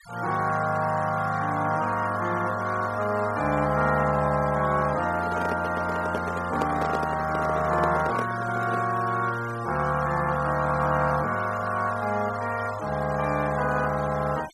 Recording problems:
noise reduction artefacts; signal-to-artefact ratio 17 dB
microphone handling noise; from 5 to 9 s; peak 0 dB vs average level

